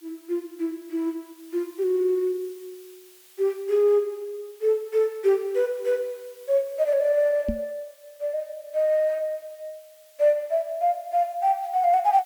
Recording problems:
hiss; slope +2 dB per octave, SNR 27 dB
microphone thump; at 7.5 s; peak +1 dB vs average level

